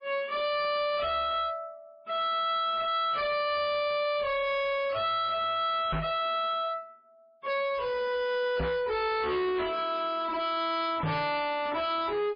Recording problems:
lossy compression; MP3, log-spectral distance 3 dB, nothing above 4.8 kHz
distortion; hard clipping, signal-to-distortion ratio 6 dB
microphone thump; at 6 s, at 8.5 s and at 11 s; peak +1 dB vs average level

